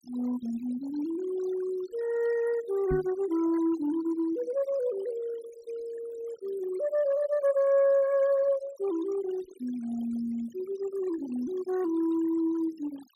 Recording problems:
denoising artefacts; signal-to-artefact ratio 20 dB
knock on the microphone; at 3 s; peak 0 dB vs average level

